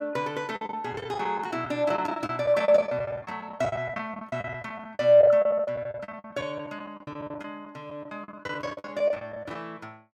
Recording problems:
packet loss; 18% of the sound replaced, filled with the last packet

